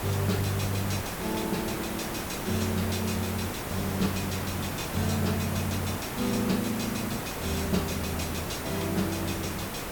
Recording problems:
hum; 50 Hz, harmonics up to 400 Hz, SNR 24 dB
background hiss; slope -5 dB per octave, SNR 2 dB

